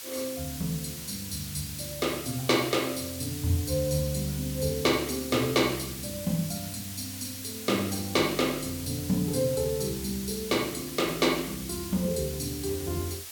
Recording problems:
background hiss; slope +2 dB per octave, SNR 8 dB

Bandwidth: 18 kHz